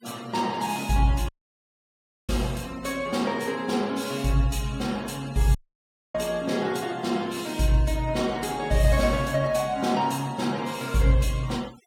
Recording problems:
denoising artefacts; signal-to-artefact ratio 20 dB
dropout; at 1.5 s for 1 s and at 5.5 s for 0.5 s

